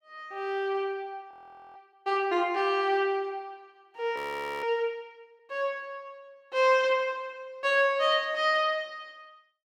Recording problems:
frozen audio; at 1.5 s and at 4 s

